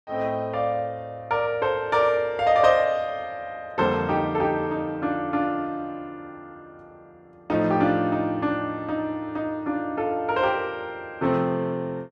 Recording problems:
none

